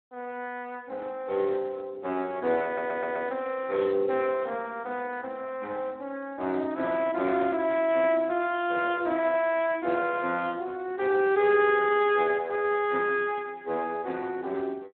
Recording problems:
telephone audio; 260 Hz to 3.7 kHz, Speex
stutter; at 2.5 s

